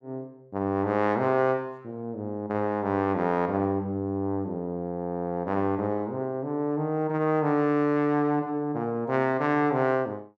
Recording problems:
none

